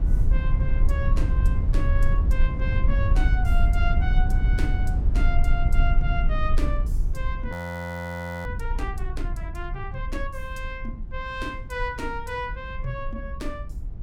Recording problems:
low-frequency rumble; below 64 Hz, SNR -8 dB
frozen audio; at 7.5 s for 1 s

